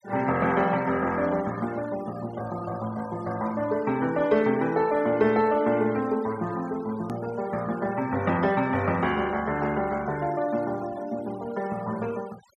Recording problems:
denoising artefacts; signal-to-artefact ratio 19 dB
click at an edit; at 7 s

